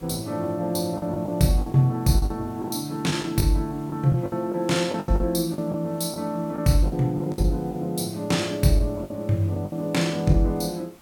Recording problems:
background hiss; slope -4 dB per octave, SNR 27 dB
packet loss; 10% of the sound replaced, filled with the last packet

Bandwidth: 17.5 kHz